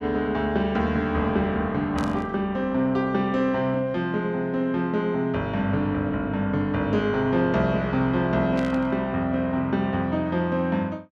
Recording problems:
static burst; at 2 s and at 8.5 s; peak -10 dB vs average level

